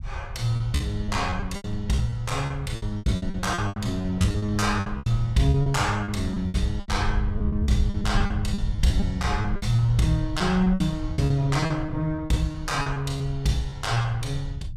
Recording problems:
rumble; below 98 Hz, SNR 7 dB
lost packets; 15% of the sound replaced, filled with repeated pitch periods

